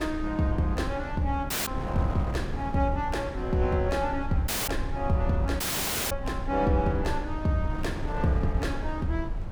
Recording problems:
low-frequency rumble; below 66 Hz, SNR 9 dB
wind on the microphone; below 320 Hz, SNR 10 dB
audio cutting out; at 1.5 s, at 4.5 s and at 5.5 s for 0.5 s

